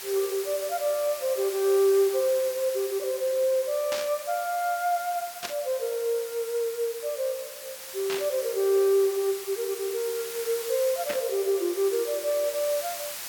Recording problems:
background hiss; slope +1 dB per octave, SNR 10 dB
static burst; 4 times, first at 4 s; peak -2 dB vs average level

